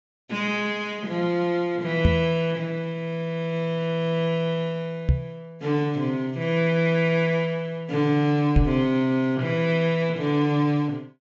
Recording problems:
low-pass filter; nothing above 8 kHz
microphone thump; at 2 s, at 5 s and at 8.5 s; peak +7 dB vs average level

